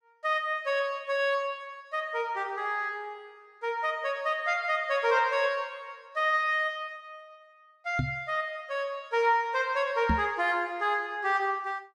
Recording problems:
microphone thump; at 8 s and at 10 s; peak +4 dB vs average level

